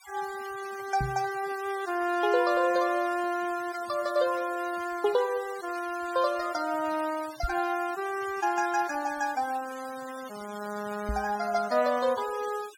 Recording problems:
noise reduction artefacts; signal-to-artefact ratio 17 dB
microphone bump; at 1 s, at 7.5 s and at 11 s; peak 0 dB vs average level

